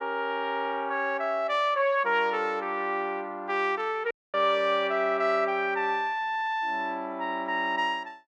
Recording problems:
audio cutting out; at 4 s

